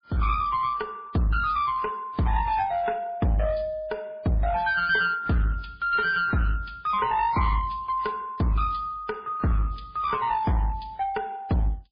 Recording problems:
lossy codec; MP3, then MP3, log-spectral distance 2 dB, nothing above 4.8 kHz
distortion; hard clipping, uneven, signal-to-distortion ratio 9 dB

